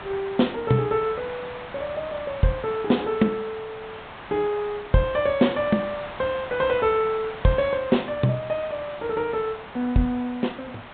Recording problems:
treble cut off; nothing above 4 kHz
background hiss; SNR 13 dB

